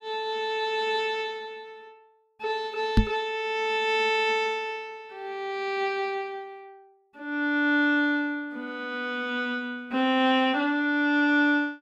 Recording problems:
microphone bump; at 3 s; peak +9 dB vs average level

